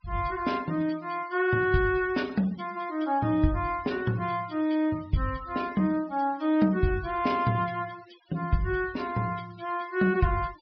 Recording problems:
treble cut off; nothing above 5.5 kHz
denoising artefacts; signal-to-artefact ratio 22 dB

